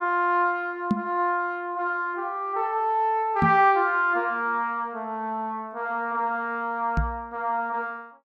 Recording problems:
microphone thump; at 1 s, at 3.5 s and at 7 s; peak +6 dB vs average level

